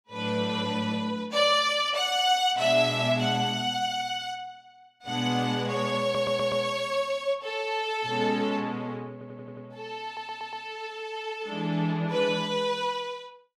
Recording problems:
audio stuttering; at 6 s, at 9 s and at 10 s

